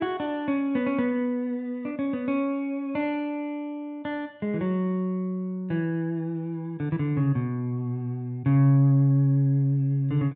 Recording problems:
low-pass filter; nothing above 5.5 kHz

